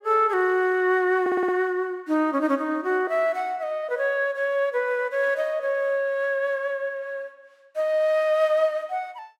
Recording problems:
stutter; at 1 s

